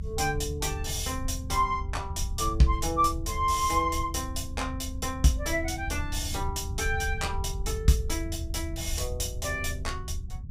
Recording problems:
low-frequency rumble; below 82 Hz, SNR 6 dB

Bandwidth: 15.5 kHz